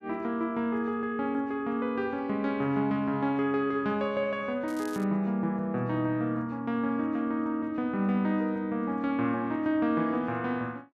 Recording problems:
crackling; at 4.5 s; loose cable, SNR 20 dB

